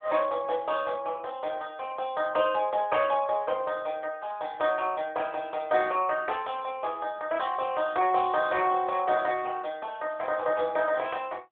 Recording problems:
telephone audio; 320 Hz to 3.4 kHz, AMR-NB

